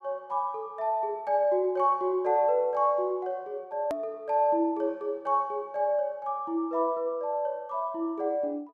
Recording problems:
click at an edit; at 4 s

